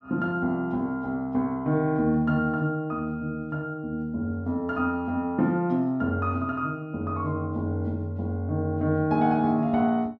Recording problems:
none

